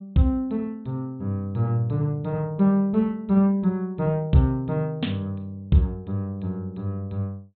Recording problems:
low-pass filter; nothing above 4 kHz

